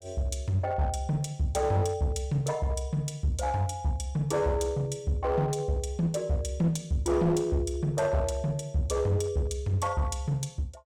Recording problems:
distortion; hard clipping, uneven, signal-to-distortion ratio 11 dB

